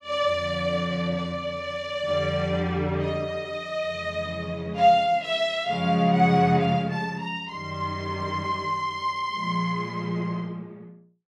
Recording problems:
none

